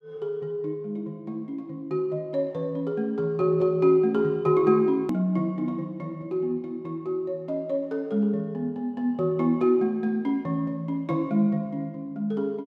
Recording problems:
hard cut with a click; at 5 s

